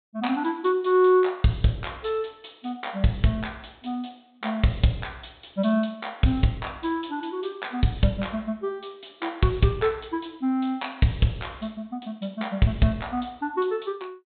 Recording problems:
low-pass filter; nothing above 4 kHz

